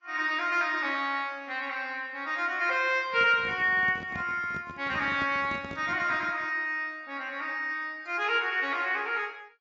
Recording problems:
lossy codec; AAC, log-spectral distance 2 dB
handling noise; from 3 to 6.5 s; peak -9 dB vs average level

